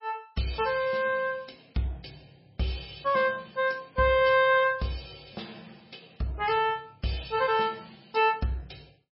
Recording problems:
lossy codec; MP3, log-spectral distance 8 dB, nothing above 5.2 kHz

